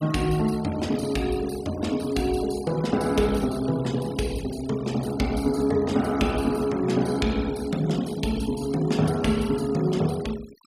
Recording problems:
noise reduction artefacts; signal-to-artefact ratio 18 dB

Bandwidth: 15.5 kHz